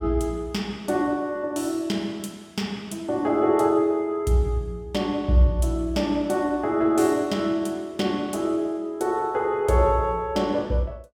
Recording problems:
none

